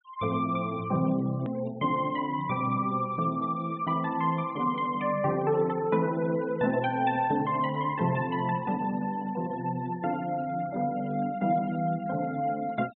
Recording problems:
treble missing; nothing above 3.8 kHz
denoising artefacts; signal-to-artefact ratio 23 dB
edit click; at 1.5 s

